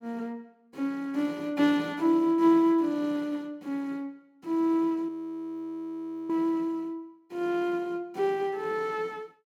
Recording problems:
audio freezing; at 5 s for 1 s

